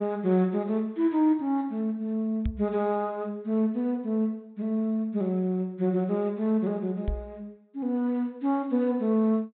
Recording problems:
treble cut off; nothing above 4 kHz
knock on the microphone; at 2.5 s and at 7 s; peak +1 dB vs average level

